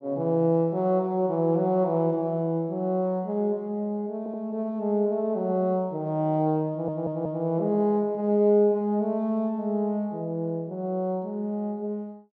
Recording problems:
audio stuttering; at 4 s and at 6.5 s

